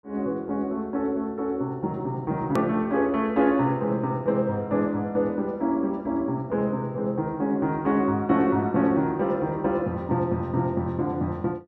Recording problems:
click at an edit; at 2.5 s

